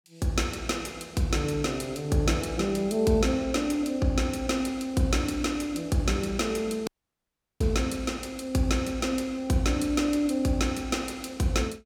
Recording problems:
dropout; at 7 s for 0.5 s

